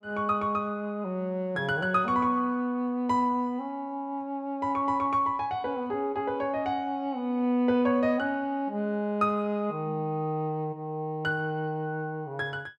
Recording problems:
none

